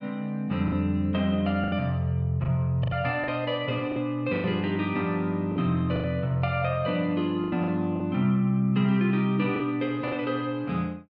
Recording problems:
packet loss; 7% of the sound replaced, filled with the last packet

